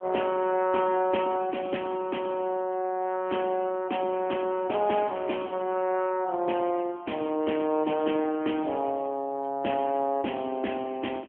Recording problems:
telephone audio; 220 Hz to 3.3 kHz, AMR-NB

